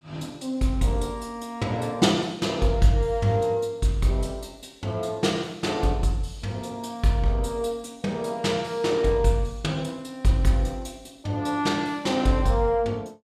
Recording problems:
none

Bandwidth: 14.5 kHz